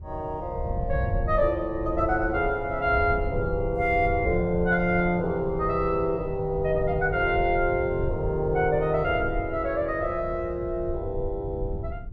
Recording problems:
low-frequency rumble; below 100 Hz, SNR 9 dB

